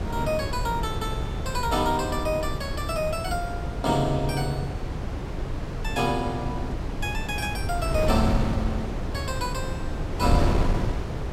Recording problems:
wind on the microphone; below 250 Hz, SNR 1 dB

